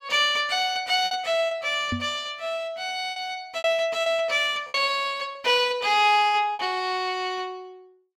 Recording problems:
packet loss; 6% of the sound replaced, filled with repeated pitch periods
knock on the microphone; at 2 s; peak -2 dB vs average level

